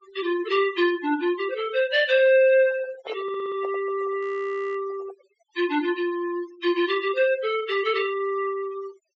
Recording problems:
treble cut off; nothing above 8 kHz
denoising artefacts; signal-to-artefact ratio 18 dB
handling noise; from 2.5 to 5.5 s; peak -10 dB vs average level
audio stuttering; at 3 s
audio freezing; at 4 s for 0.5 s

